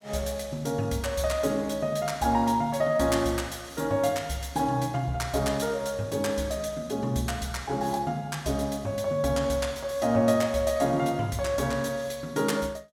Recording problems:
none

